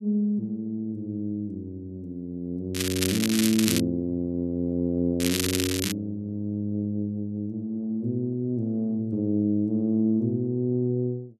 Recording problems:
crackle; from 2.5 to 4 s and at 5 s; loose cable, SNR 1 dB

